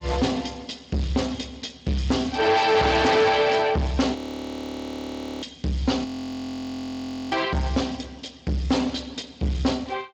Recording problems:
lossy compression; Speex, log-spectral distance 7 dB
distortion; hard clipping, uneven, signal-to-distortion ratio 7 dB
audio freezing; at 4 s for 1.5 s and at 6 s for 1.5 s

